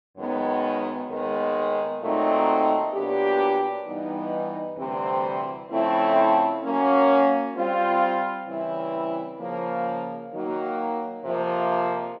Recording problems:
none

